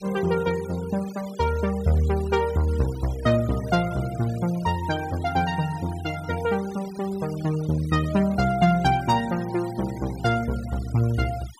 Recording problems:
noise reduction artefacts; signal-to-artefact ratio 20 dB

